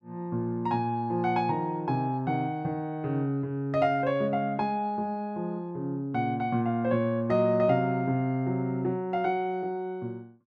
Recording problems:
none

